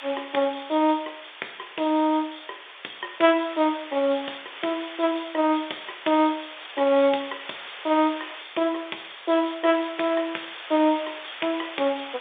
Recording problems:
phone line; 340 Hz to 3.6 kHz, G.711
hiss; SNR 14 dB

